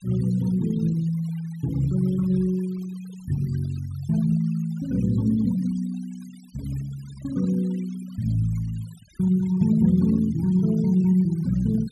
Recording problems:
noise reduction artefacts; signal-to-artefact ratio 23 dB

